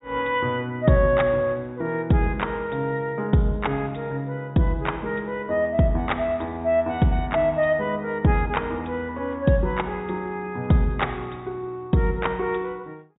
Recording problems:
treble missing; nothing above 4 kHz

